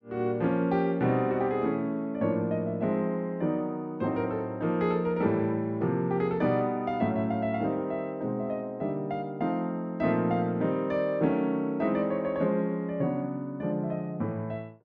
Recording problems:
none

